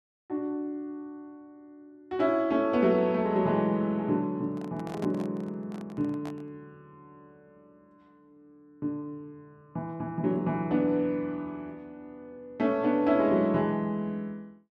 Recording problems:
microphone handling noise; from 4.5 to 6.5 s; peak -8 dB vs average level

